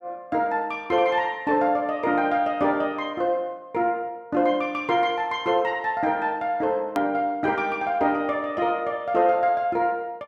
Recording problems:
edit click; at 7 s

